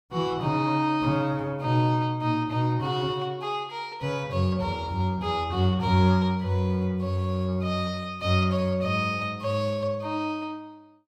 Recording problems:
none

